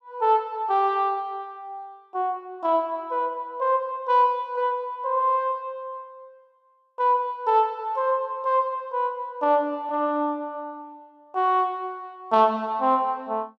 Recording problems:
none

